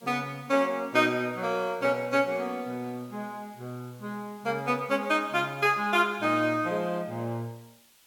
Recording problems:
hiss; slope +1 dB per octave, SNR 28 dB

